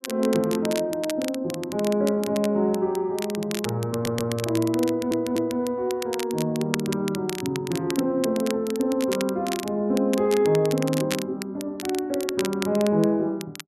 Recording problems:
crackle; vinyl, SNR 12 dB
audio stuttering; at 4 s and at 5 s

